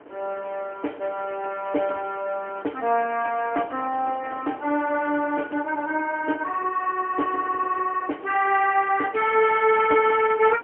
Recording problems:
telephone audio; 240 Hz to 3.1 kHz, AMR-NB, then MP3
wind on the microphone; below 920 Hz, SNR 20 dB

